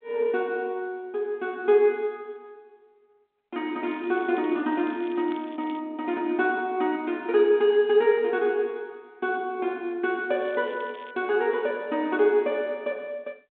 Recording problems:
telephone audio; 150 Hz to 3.7 kHz, G.726
crackle; from 4 to 6 s and at 10 s; loose cable, SNR 27 dB

